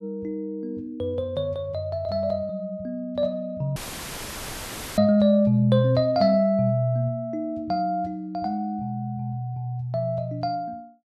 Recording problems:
audio cutting out; at 4 s for 1 s; filled with static

